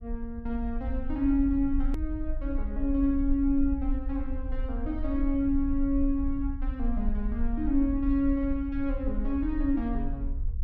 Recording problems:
low-frequency rumble; below 52 Hz, SNR 5 dB
hard cut with a click; at 2 s

